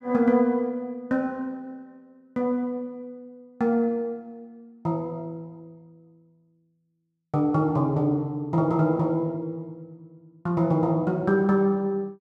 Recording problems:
none

